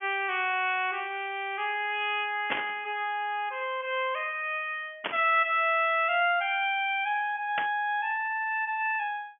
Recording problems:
treble cut off; nothing above 3.4 kHz
burst of static; at 2.5 s, at 5 s and at 7.5 s; peak +2 dB vs average level

